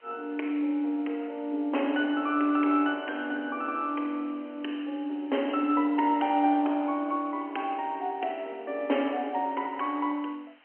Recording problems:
telephone audio; 260 Hz to 3.2 kHz, G.711
background hiss; SNR 29 dB

